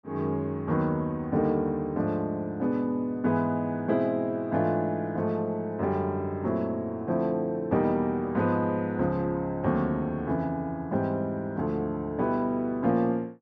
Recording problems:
none

